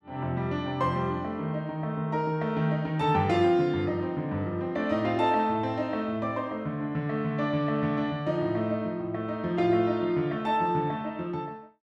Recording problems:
none

